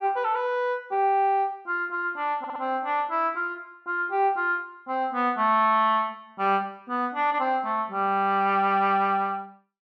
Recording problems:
stutter; at 2.5 s

